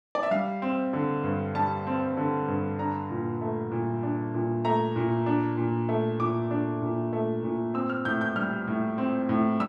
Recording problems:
none

